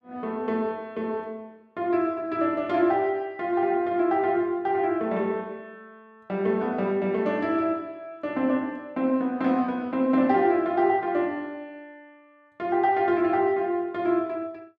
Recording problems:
none

